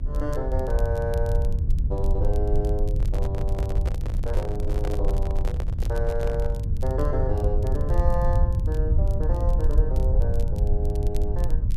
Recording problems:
electrical hum; 50 Hz, harmonics up to 400 Hz, SNR 20 dB
low-frequency rumble; below 76 Hz, SNR -6 dB
crackling; vinyl, SNR 21 dB
microphone handling noise; from 3 to 6.5 s; peak 0 dB vs average level

